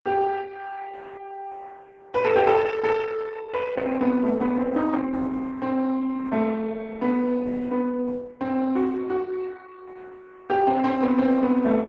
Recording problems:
lossy compression; Opus, log-spectral distance 4 dB

